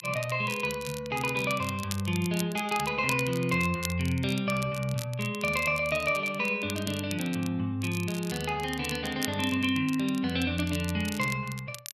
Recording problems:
crackling; vinyl, SNR 12 dB

